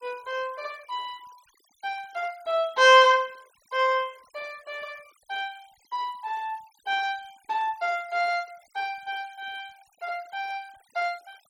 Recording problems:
denoising artefacts; signal-to-artefact ratio 27 dB

